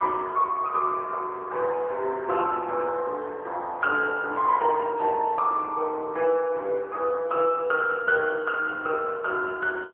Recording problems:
phone line; 320 Hz to 2.6 kHz, AMR-NB

